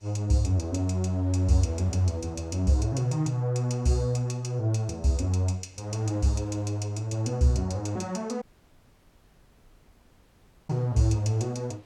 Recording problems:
wind noise; below 1.4 kHz, SNR 31 dB
audio cutting out; at 8.5 s for 2.5 s

